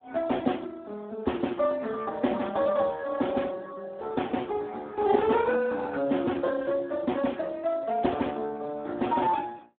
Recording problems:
telephone audio; 170 Hz to 3.6 kHz, Speex

